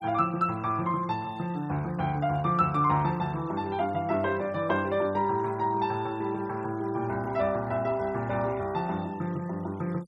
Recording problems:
denoising artefacts; signal-to-artefact ratio 25 dB

